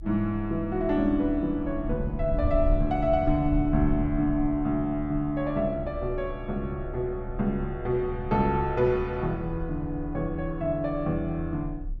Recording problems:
rumble; below 70 Hz, strongest tone 32 Hz, SNR 9 dB

